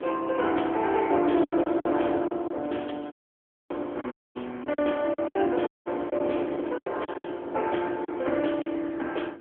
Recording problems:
telephone audio; 260 Hz to 3.4 kHz, AMR-NB
wind on the microphone; below 540 Hz, SNR 10 dB
lost packets; 10% of the sound replaced, filled with silence
crackle; at 2.5 s; loose cable, SNR 25 dB
audio cutting out; at 3 s for 0.5 s, at 4 s and at 5.5 s

